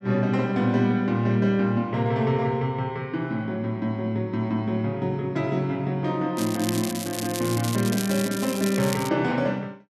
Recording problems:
crackling; from 6.5 to 9 s; loose cable, SNR 9 dB

